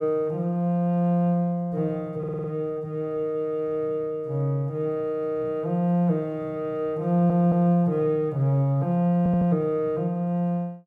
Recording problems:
audio stuttering; at 2 s, at 7 s and at 9 s

